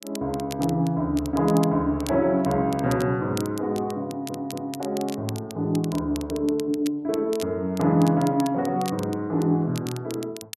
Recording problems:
crackling; vinyl, SNR 17 dB
stutter; at 4 s

